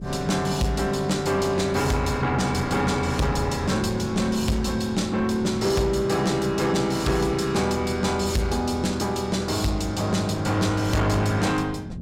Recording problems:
distorted audio; soft clipping, signal-to-distortion ratio 11 dB
wind on the microphone; below 220 Hz, SNR 15 dB

